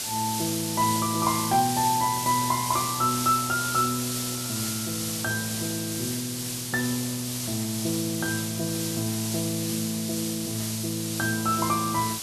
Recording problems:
background hiss; SNR 2 dB

